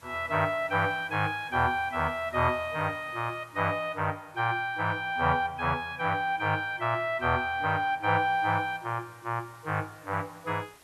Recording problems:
background hiss; slope -2 dB per octave, SNR 28 dB

